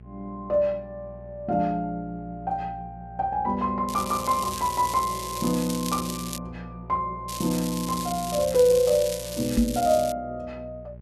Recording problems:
hum; 60 Hz, harmonics up to 600 Hz, SNR 18 dB
crackling; from 4 to 6.5 s and from 7.5 to 10 s; loose cable, SNR 9 dB
microphone bump; at 9.5 s; peak +8 dB vs average level

